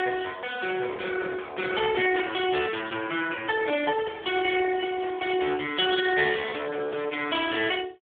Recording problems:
phone line; 300 Hz to 3.5 kHz, Speex
distorted audio; hard clipping, signal-to-distortion ratio 15 dB

